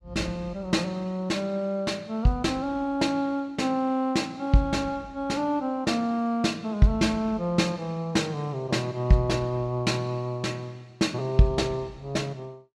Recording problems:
none

